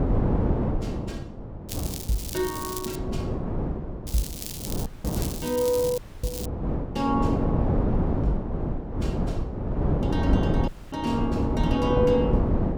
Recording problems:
wind noise; below 320 Hz, SNR -1 dB
crackle; from 1.5 to 3 s and from 4 to 6.5 s; loose cable, SNR 7 dB
audio cutting out; at 5 s, at 6 s and at 11 s

